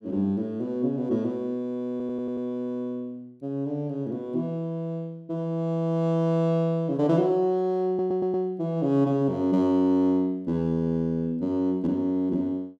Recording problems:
stutter; at 2 s and at 8 s

